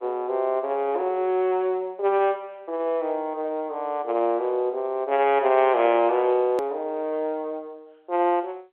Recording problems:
phone line; 320 Hz to 3.4 kHz, G.711
hard cut with a click; at 6.5 s

